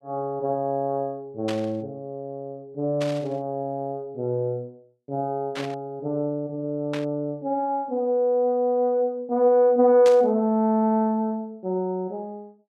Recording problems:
static burst; 5 times, first at 1.5 s; peak -5 dB vs average level

